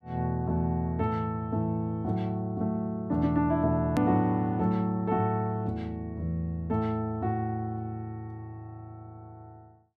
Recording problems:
edit click; at 4 s

